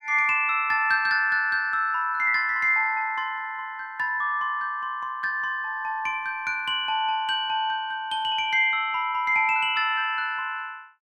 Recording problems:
none

